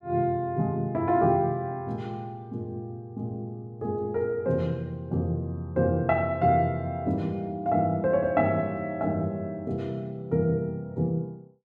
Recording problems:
none

